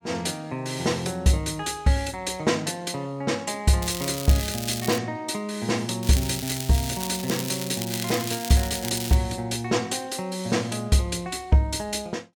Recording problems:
crackling; from 4 to 5 s and from 6 to 9 s; loose cable, SNR 7 dB

